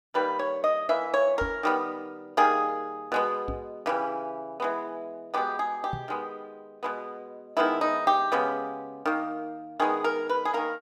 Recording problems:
microphone bump; at 1.5 s, at 3.5 s and at 6 s; peak -4 dB vs average level

